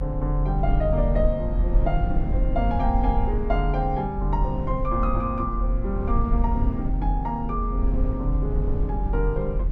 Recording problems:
low-frequency rumble; below 60 Hz, strongest tone 42 Hz, SNR -1 dB

